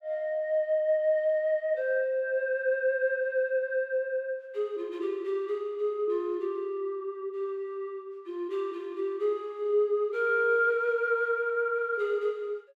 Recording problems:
none

